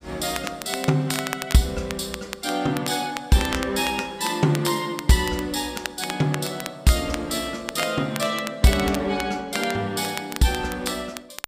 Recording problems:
crackle; vinyl, SNR 11 dB

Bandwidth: 15 kHz